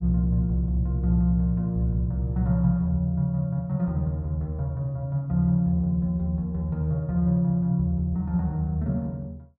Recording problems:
treble missing; nothing above 5.5 kHz

